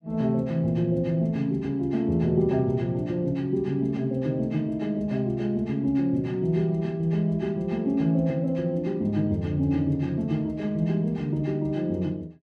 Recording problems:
none

